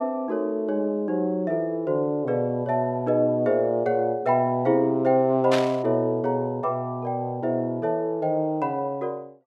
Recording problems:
burst of static; at 5.5 s; peak 0 dB vs average level

